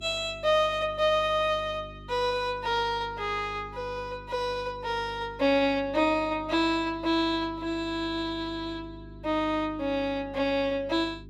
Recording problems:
hum; 50 Hz, harmonics up to 400 Hz, SNR 19 dB

